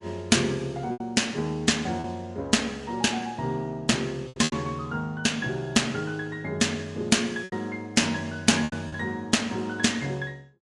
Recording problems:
codec artefacts; MP3, log-spectral distance 2 dB, nothing above 11 kHz
lost packets; 5% of the sound replaced, filled with repeated pitch periods

